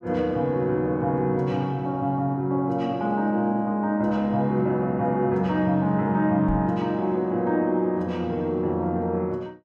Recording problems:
microphone thump; at 6.5 s; peak -3 dB vs average level

